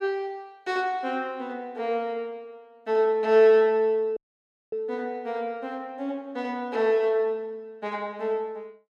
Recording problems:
dropout; at 4 s for 0.5 s

